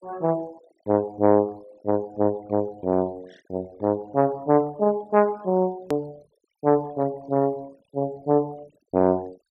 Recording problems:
denoising artefacts; signal-to-artefact ratio 27 dB
click at an edit; at 6 s

